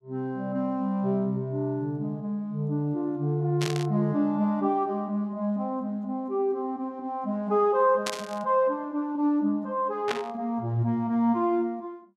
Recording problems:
static burst; at 3.5 s, at 8 s and at 10 s; peak +1 dB vs average level

